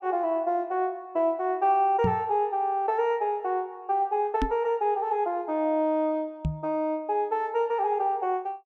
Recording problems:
microphone thump; at 2 s, at 4.5 s and at 6.5 s; peak +2 dB vs average level

